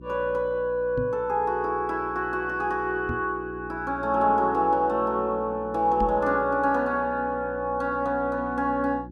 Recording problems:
hum; 60 Hz, harmonics up to 360 Hz, SNR 18 dB
microphone bump; at 1 s, at 3 s and at 6 s; peak -3 dB vs average level

